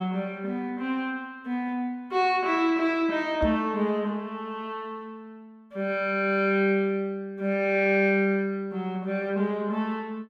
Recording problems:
microphone thump; at 3.5 s; peak -1 dB vs average level

